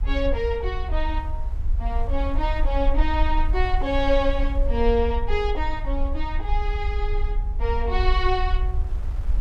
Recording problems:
low-frequency rumble; below 54 Hz, SNR 1 dB
wind on the microphone; below 1 kHz, SNR 22 dB

